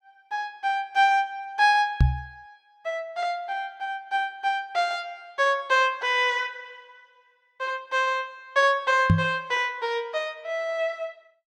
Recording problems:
knock on the microphone; at 2 s and at 9 s; peak +9 dB vs average level

